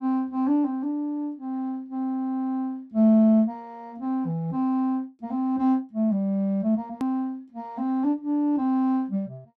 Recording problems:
edit click; at 7 s

